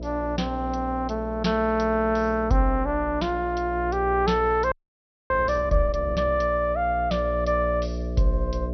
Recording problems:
low-pass filter; nothing above 5.9 kHz
hum; 60 Hz, harmonics up to 660 Hz, SNR 8 dB
frozen audio; at 4.5 s for 0.5 s

